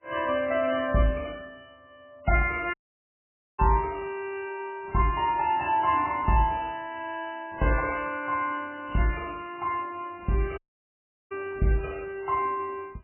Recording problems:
codec artefacts; MP3, log-spectral distance 3 dB, nothing above 2.8 kHz
audio cutting out; at 2.5 s for 1 s and at 11 s for 0.5 s

